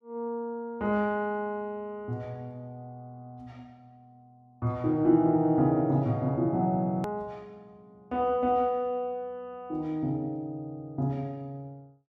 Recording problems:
edit click; at 7 s

